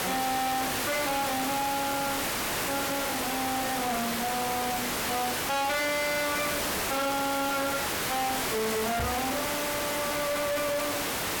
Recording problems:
distortion; soft clipping, signal-to-distortion ratio 6 dB
background hiss; slope -3 dB per octave, SNR 0 dB
microphone thump; at 9 s; peak +2 dB vs average level

